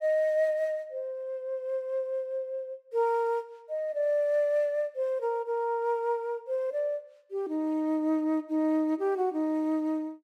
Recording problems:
none

